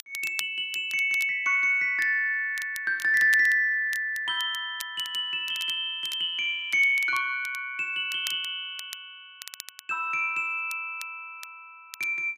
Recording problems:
crackling; vinyl, SNR 18 dB

